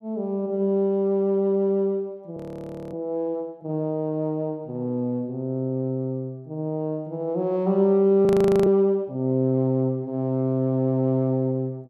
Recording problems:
audio freezing; at 2.5 s for 0.5 s and at 8.5 s

